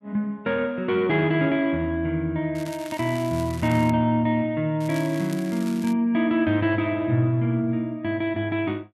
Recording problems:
crackle; from 2.5 to 4 s and from 5 to 6 s; loose cable, SNR 19 dB

